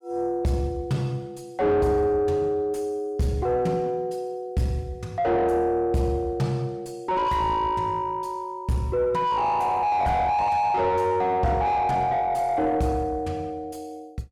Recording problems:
distortion; soft clipping, signal-to-distortion ratio 5 dB

